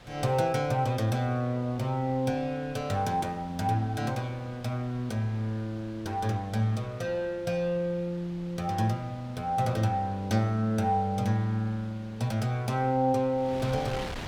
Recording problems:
wind on the microphone; below 2.2 kHz, SNR 19 dB

